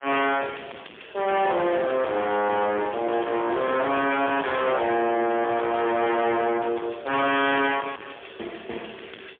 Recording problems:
telephone audio; 220 Hz to 3.4 kHz, AMR-NB, then MP3
distorted audio; hard clipping, signal-to-distortion ratio 6 dB

